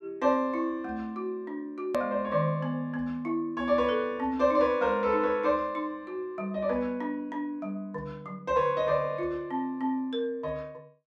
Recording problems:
edit click; at 2 s

